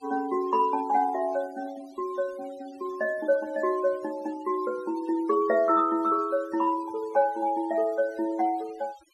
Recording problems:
noise reduction artefacts; signal-to-artefact ratio 23 dB

